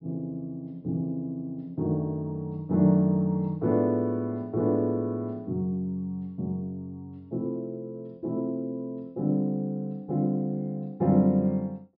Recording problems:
treble missing; nothing above 5.3 kHz

